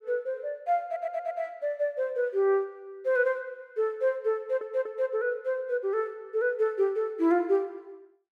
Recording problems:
stutter; at 1 s and at 4.5 s

